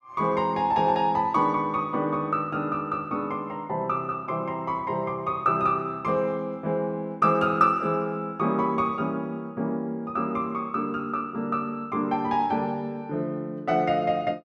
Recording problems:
none

